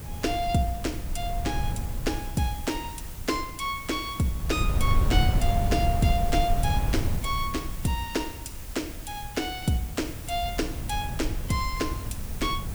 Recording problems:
background hiss; slope -1 dB per octave, SNR 12 dB
wind noise; below 100 Hz, SNR 1 dB

